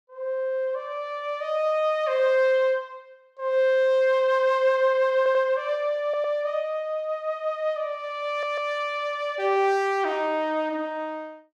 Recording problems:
audio stuttering; at 5 s, at 6 s and at 8.5 s

